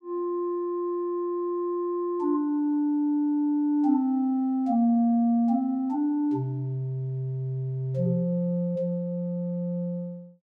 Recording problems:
none

